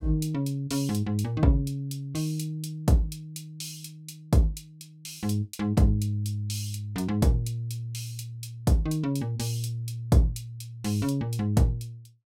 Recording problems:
none

